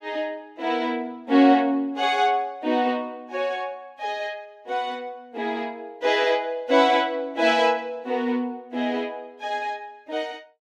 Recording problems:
none

